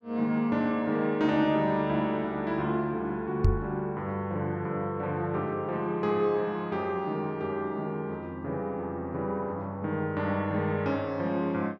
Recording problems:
microphone bump; at 3.5 s; peak +8 dB vs average level

